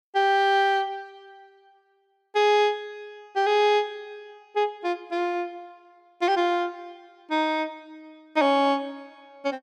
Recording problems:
none

